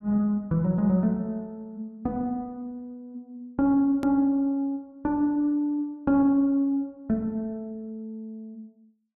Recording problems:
edit click; at 4 s

